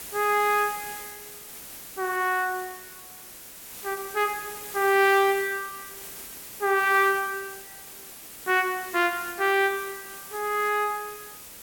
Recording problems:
background hiss; slope -1 dB per octave, SNR 14 dB

